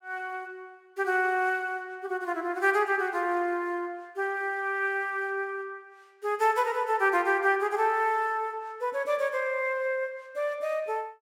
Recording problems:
none

